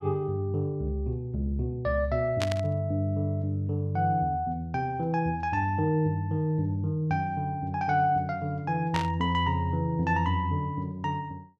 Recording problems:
burst of static; at 2.5 s and at 9 s; peak +1 dB vs average level

